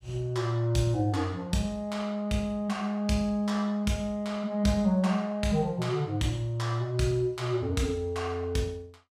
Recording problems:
none

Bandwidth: 15.5 kHz